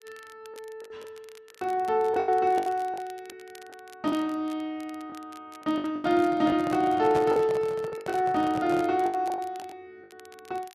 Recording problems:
crackle; vinyl, SNR 26 dB
lost packets; 11% of the sound replaced, filled with the last packet
handling noise; from 6 to 9 s; peak -3 dB vs average level

